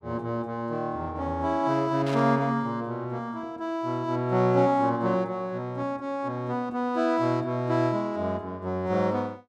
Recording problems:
static burst; at 2 s; peak -8 dB vs average level

